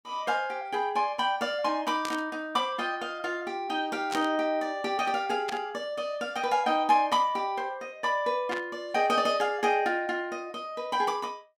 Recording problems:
burst of static; 4 times, first at 2 s; peak -3 dB vs average level

